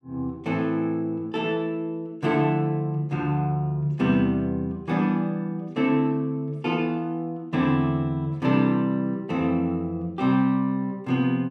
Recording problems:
none

